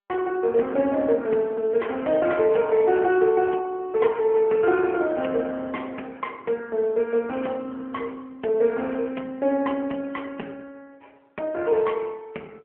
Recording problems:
telephone audio; 240 Hz to 3.3 kHz, AMR-NB

